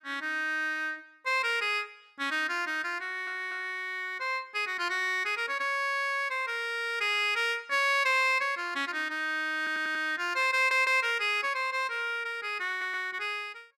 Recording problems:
stutter; 4 times, first at 3 s

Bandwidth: 14 kHz